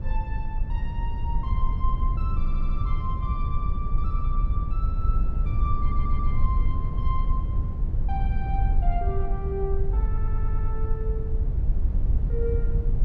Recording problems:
low-frequency rumble; below 68 Hz, SNR -9 dB
audio stuttering; at 2.5 s, at 6 s and at 10 s

